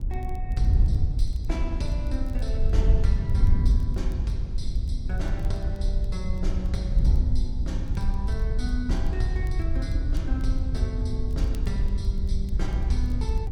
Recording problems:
wind on the microphone; below 72 Hz, SNR -8 dB
crackle; vinyl, SNR 26 dB

